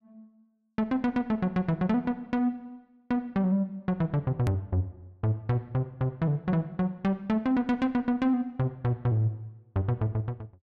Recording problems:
click at an edit; at 4.5 s

